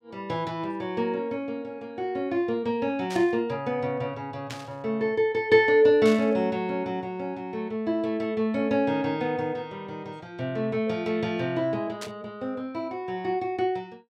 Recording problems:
burst of static; 4 times, first at 3 s; peak -6 dB vs average level

